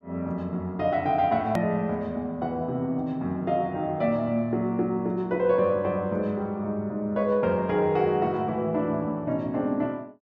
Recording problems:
click at an edit; at 1.5 s

